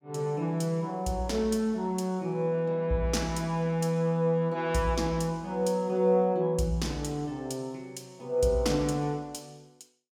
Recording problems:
none

